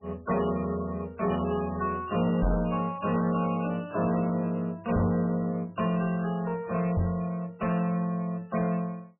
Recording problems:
lossy compression; MP3, log-spectral distance 5 dB, nothing above 2.9 kHz
distortion; soft clipping, signal-to-distortion ratio 11 dB
knock on the microphone; at 2.5 s, at 5 s and at 7 s; peak +5 dB vs average level

